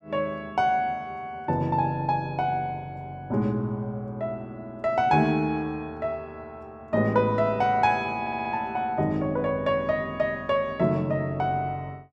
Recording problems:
stutter; at 8 s

